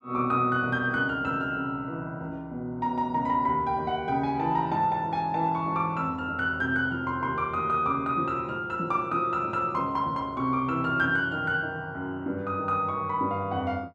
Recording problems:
none

